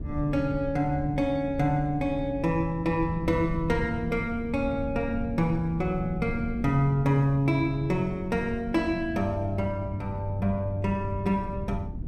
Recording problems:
wind on the microphone; below 160 Hz, SNR 9 dB

